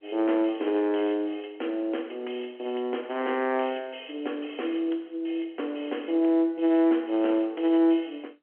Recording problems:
telephone audio; 260 Hz to 3.3 kHz, G.711

